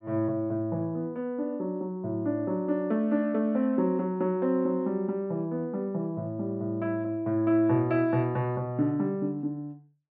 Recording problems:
none

